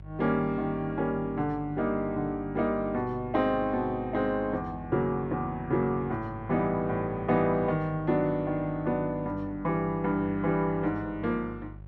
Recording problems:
hum; 50 Hz, harmonics up to 550 Hz, SNR 17 dB

